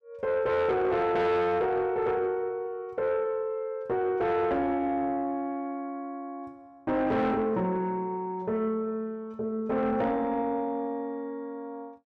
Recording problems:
distorted audio; soft clipping, signal-to-distortion ratio 11 dB

